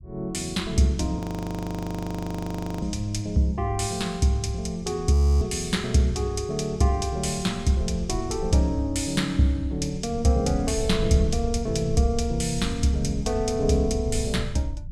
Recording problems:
low-frequency rumble; below 86 Hz, SNR 12 dB
frozen audio; at 1 s for 1.5 s and at 5 s

